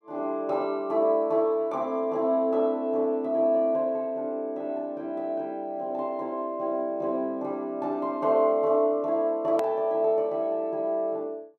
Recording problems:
edit click; at 9.5 s

